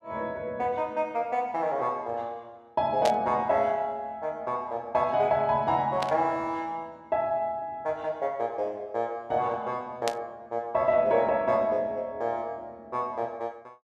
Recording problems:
burst of static; at 3 s, at 6 s and at 10 s; peak +1 dB vs average level

